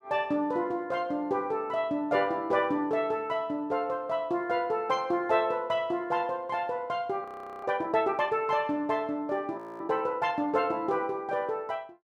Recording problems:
audio freezing; at 7 s and at 9.5 s

